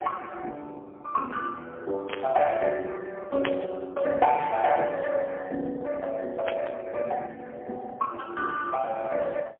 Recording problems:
telephone audio; 220 Hz to 3 kHz, AMR-NB, then MP3
burst of static; at 2 s, at 3.5 s and at 6.5 s; peak +4 dB vs average level

